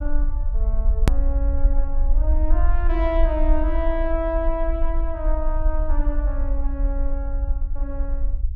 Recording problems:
rumble; below 48 Hz, SNR -5 dB
click at an edit; at 1 s

